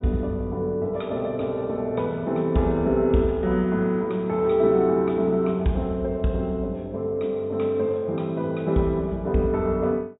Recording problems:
treble cut off; nothing above 4 kHz

